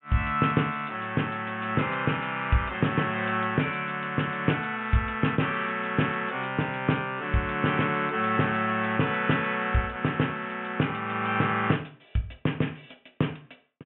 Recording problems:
treble cut off; nothing above 3.3 kHz

